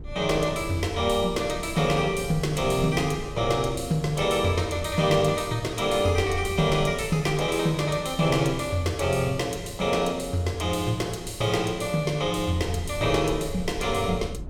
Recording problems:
rumble; below 140 Hz, SNR 15 dB

